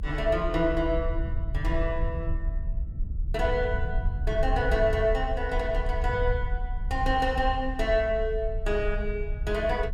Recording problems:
low-frequency rumble; below 64 Hz, SNR 4 dB

